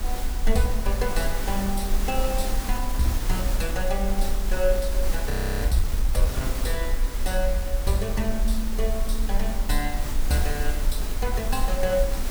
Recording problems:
background hiss; slope -3 dB per octave, SNR 5 dB
low-frequency rumble; below 44 Hz, SNR 0 dB
frozen audio; at 5.5 s

